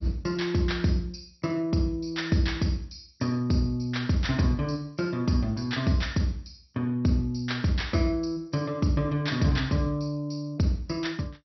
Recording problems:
lossy codec; MP2, log-spectral distance 4 dB, nothing above 5.8 kHz

